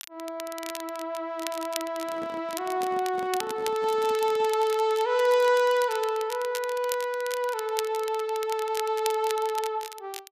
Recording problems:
crackling; vinyl, SNR 13 dB
handling noise; from 2 to 4.5 s; peak -10 dB vs average level

